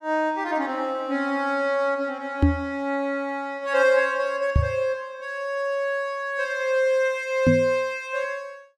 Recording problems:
microphone thump; at 2.5 s, at 4.5 s and at 7.5 s; peak +9 dB vs average level

